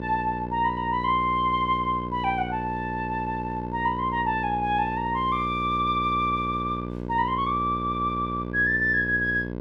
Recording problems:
electrical hum; 60 Hz, harmonics up to 1.6 kHz, SNR 8 dB

